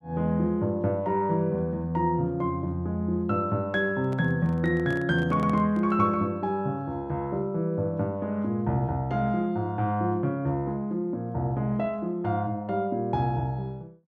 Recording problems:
handling noise; from 4 to 6 s; peak -10 dB vs average level

